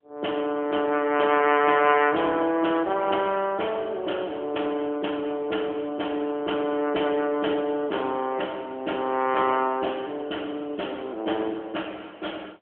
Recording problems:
phone line; 260 Hz to 3.2 kHz, AMR-NB

